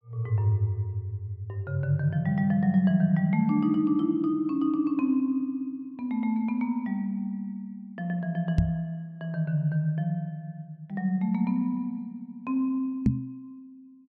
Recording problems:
microphone thump; at 8.5 s and at 13 s; peak +8 dB vs average level

